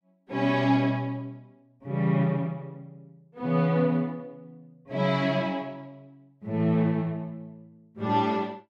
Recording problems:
none

